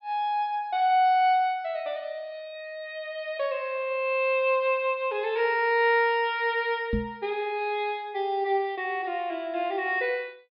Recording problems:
low-pass filter; nothing above 5.5 kHz
knock on the microphone; at 7 s; peak +1 dB vs average level

